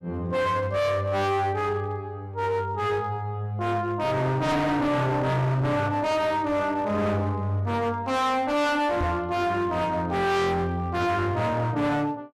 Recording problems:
distorted audio; hard clipping, uneven, signal-to-distortion ratio 6 dB
microphone thump; at 9 s; peak +1 dB vs average level

